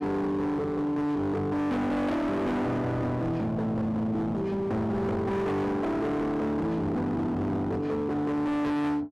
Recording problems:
distorted audio; hard clipping, signal-to-distortion ratio 6 dB

